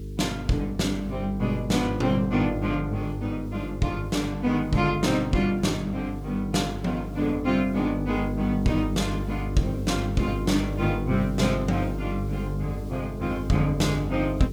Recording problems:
electrical hum; 50 Hz, harmonics up to 450 Hz, SNR 7 dB
background hiss; slope +1 dB per octave, SNR 29 dB

